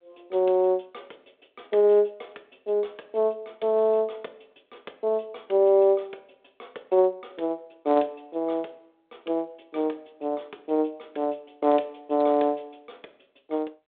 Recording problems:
telephone audio; 280 Hz to 3.6 kHz, G.726

